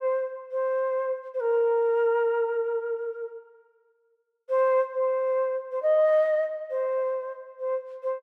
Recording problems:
none

